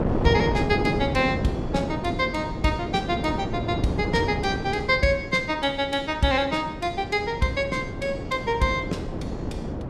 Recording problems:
wind on the microphone; below 430 Hz, SNR 5 dB

